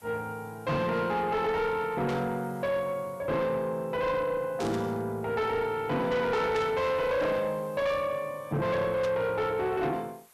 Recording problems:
distortion; soft clipping, signal-to-distortion ratio 10 dB
hiss; slope -2 dB per octave, SNR 28 dB
burst of static; 4 times, first at 2 s; peak -8 dB vs average level

